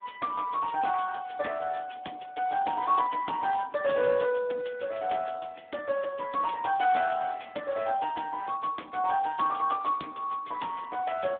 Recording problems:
telephone audio; 240 Hz to 2.8 kHz, Speex

